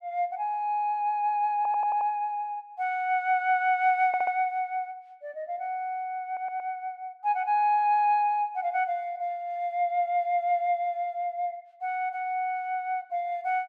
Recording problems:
audio stuttering; at 1.5 s, at 4 s and at 6.5 s

